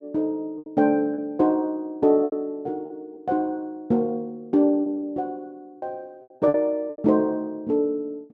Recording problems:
packet loss; 7% of the sound replaced, filled with repeated pitch periods

